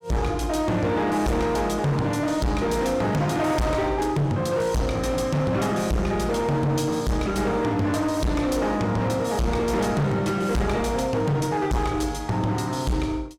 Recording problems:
distorted audio; hard clipping, uneven, signal-to-distortion ratio 6 dB

